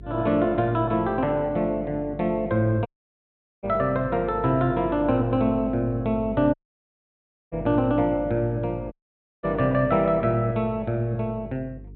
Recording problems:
low-pass filter; nothing above 4.2 kHz
electrical hum; 50 Hz, harmonics up to 450 Hz, SNR 17 dB
audio cutting out; at 3 s for 1 s, at 6.5 s for 1 s and at 9 s for 0.5 s

